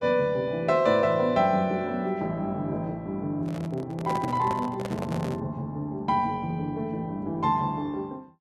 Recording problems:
handling noise; from 3.5 to 5.5 s; peak -1 dB vs average level

